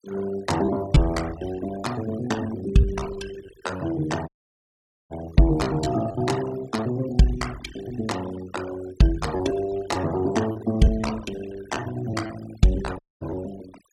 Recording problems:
noise reduction artefacts; signal-to-artefact ratio 15 dB
lost packets; 7% of the sound replaced, filled with repeated pitch periods
audio cutting out; at 4.5 s for 1 s and at 13 s

